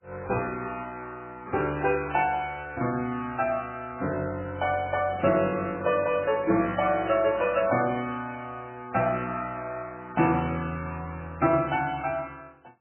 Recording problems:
lossy compression; MP3, log-spectral distance 3 dB, nothing above 2.5 kHz

